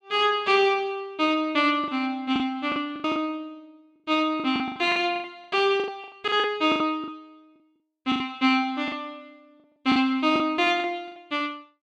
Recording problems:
lost packets; 13% of the sound replaced, filled with the last packet

